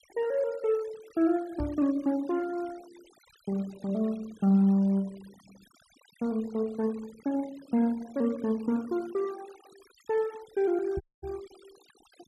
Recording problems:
noise reduction artefacts; signal-to-artefact ratio 24 dB
microphone thump; at 1.5 s and at 11 s; peak -4 dB vs average level
dropout; at 11 s

